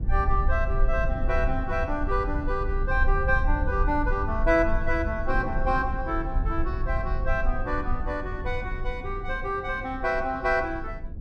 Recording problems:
rumble; below 58 Hz, strongest tone 20 Hz, SNR 3 dB
wind noise; below 290 Hz, SNR 15 dB

